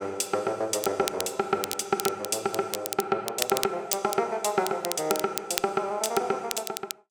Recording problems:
crackling; vinyl, SNR 6 dB

